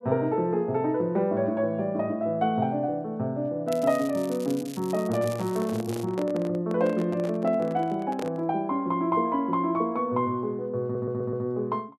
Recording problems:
crackling; from 3.5 to 6 s; loose cable, SNR 18 dB
microphone handling noise; from 5 to 8.5 s; peak -5 dB vs average level
audio stuttering; at 11 s

